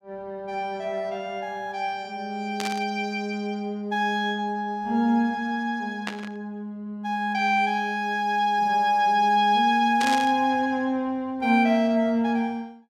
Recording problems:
burst of static; at 2.5 s, at 6 s and at 10 s; peak -2 dB vs average level

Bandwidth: 16 kHz